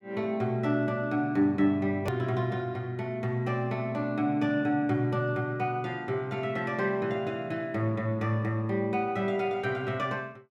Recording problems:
hard cut with a click; at 2 s

